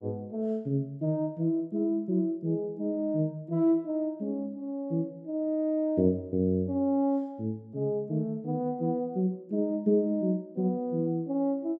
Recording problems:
none

